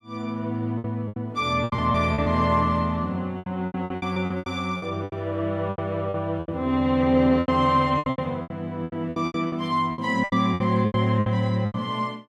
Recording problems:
lost packets; 17% of the sound replaced, filled with repeated pitch periods

